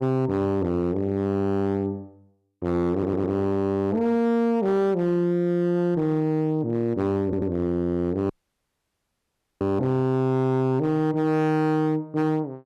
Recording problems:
distorted audio; hard clipping, uneven, signal-to-distortion ratio 11 dB
audio stuttering; at 3 s and at 7 s
dropout; at 8.5 s for 1.5 s

